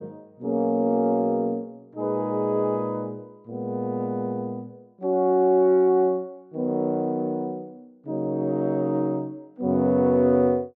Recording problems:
none

